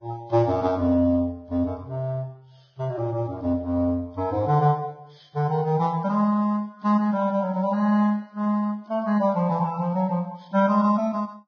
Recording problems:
lossy codec; Vorbis, log-spectral distance 2 dB, nothing above 6.2 kHz

